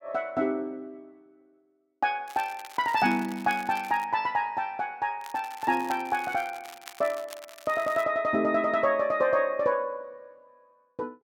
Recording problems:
crackle; from 2.5 to 4 s and from 5 to 8 s; loose cable, SNR 19 dB

